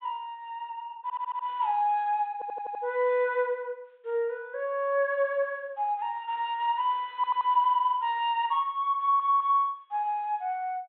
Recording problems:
treble cut off; nothing above 4 kHz
stutter; 4 times, first at 1 s

